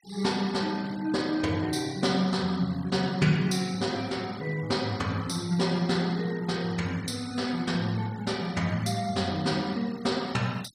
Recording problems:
noise reduction artefacts; signal-to-artefact ratio 21 dB

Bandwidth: 15.5 kHz